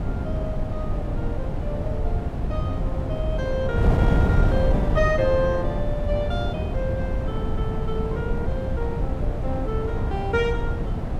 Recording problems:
wind on the microphone; below 170 Hz, SNR -3 dB

